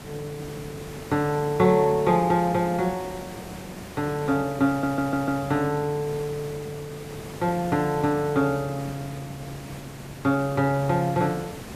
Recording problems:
hiss; slope -5 dB per octave, SNR 14 dB
audio stuttering; at 4.5 s

